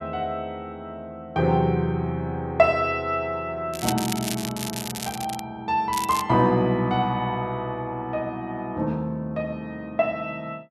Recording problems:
crackle; from 3.5 to 5.5 s and at 6 s; loose cable, SNR 7 dB

